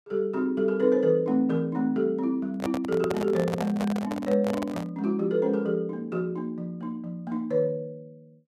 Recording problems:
microphone handling noise; from 2.5 to 5 s; peak -1 dB vs average level

